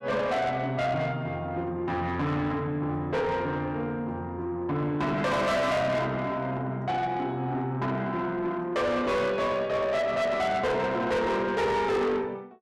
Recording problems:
distortion; soft clipping, signal-to-distortion ratio 7 dB

